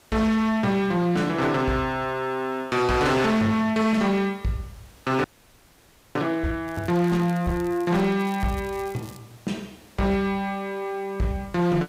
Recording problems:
distorted audio; hard clipping, signal-to-distortion ratio 11 dB
background hiss; slope -3 dB per octave, SNR 29 dB
frozen audio; at 5 s for 1 s
crackling; from 6.5 to 9 s; loose cable, SNR 24 dB

